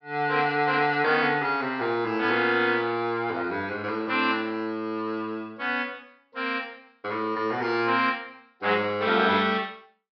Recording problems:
treble cut off; nothing above 5.5 kHz

